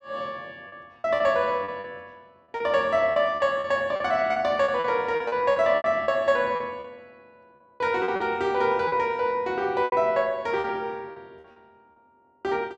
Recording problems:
lost packets; 11% of the sound replaced, filled with repeated pitch periods

